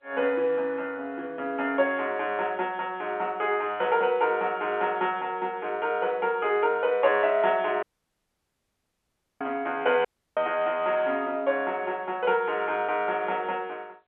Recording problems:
telephone audio; 300 Hz to 3.4 kHz, G.711
dropout; at 8 s for 1.5 s and at 10 s

